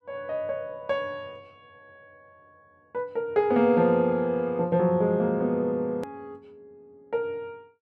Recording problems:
click at an edit; at 6 s

